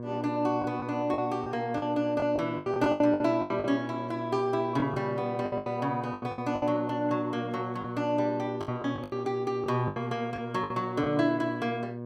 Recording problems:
hum; 60 Hz, harmonics up to 1.2 kHz, SNR 9 dB
lost packets; 11% of the sound replaced, filled with the last packet

